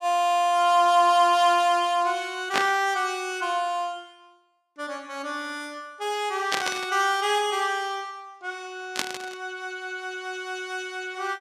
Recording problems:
burst of static; at 2.5 s, at 6.5 s and at 9 s; peak +4 dB vs average level

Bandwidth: 15 kHz